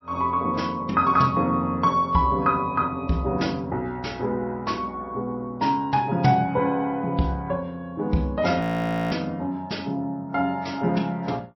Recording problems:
lossy codec; MP3, log-spectral distance 2 dB
audio freezing; at 8.5 s for 0.5 s

